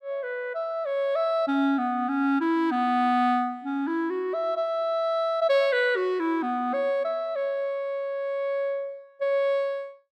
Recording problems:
none

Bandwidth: 14 kHz